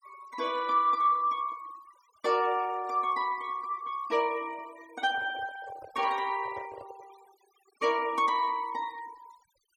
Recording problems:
denoising artefacts; signal-to-artefact ratio 21 dB
handling noise; from 5 to 7 s; peak -11 dB vs average level

